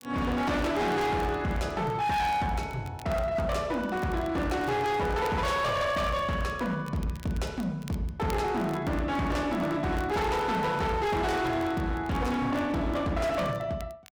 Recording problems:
distorted audio; hard clipping, signal-to-distortion ratio 7 dB
crackling; vinyl, SNR 24 dB

